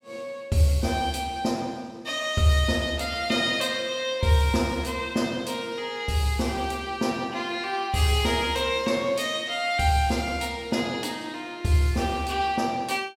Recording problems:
none

